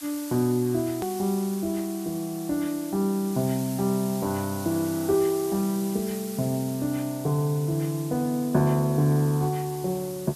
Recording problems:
background hiss; slope +2 dB per octave, SNR 14 dB
edit click; at 1 s

